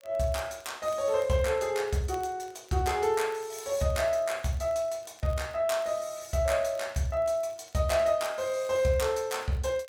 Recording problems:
crackle; vinyl, SNR 29 dB

